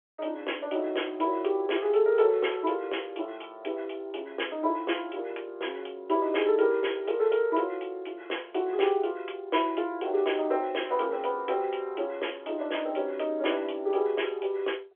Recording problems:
telephone audio; 300 Hz to 3.4 kHz, G.711

